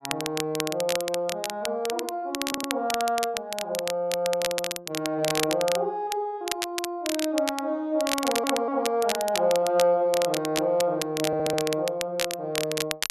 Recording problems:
crackling; vinyl, SNR 5 dB
audio stuttering; at 2.5 s, at 8 s and at 11 s

